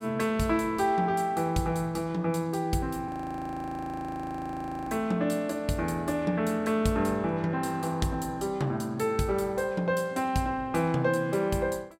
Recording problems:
audio freezing; at 3 s for 2 s

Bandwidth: 16.5 kHz